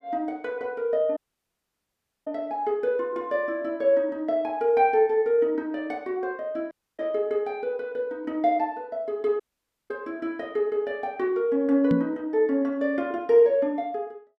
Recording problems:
audio cutting out; at 1 s for 1 s, at 6.5 s and at 9.5 s for 0.5 s
microphone thump; at 12 s; peak +3 dB vs average level

